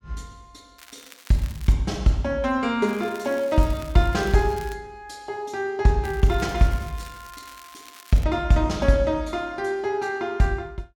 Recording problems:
crackling; at 1 s, from 3 to 4.5 s and from 6 to 8 s; loose cable, SNR 22 dB

